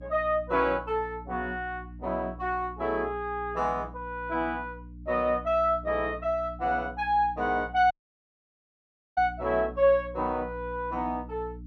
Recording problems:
electrical hum; 60 Hz, harmonics up to 300 Hz, SNR 16 dB
dropout; at 8 s for 1.5 s

